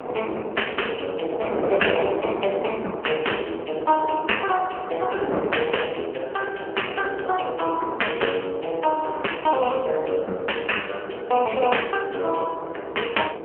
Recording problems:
phone line; 300 Hz to 3.1 kHz, AMR-NB
wind on the microphone; below 670 Hz, SNR 7 dB

